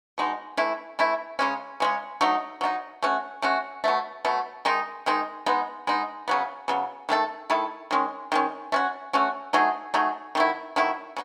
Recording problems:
none

